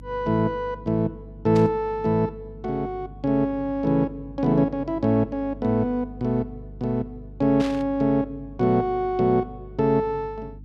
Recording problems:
hum; 50 Hz, harmonics up to 300 Hz, SNR 19 dB
static burst; at 1.5 s and at 7.5 s; peak -8 dB vs average level

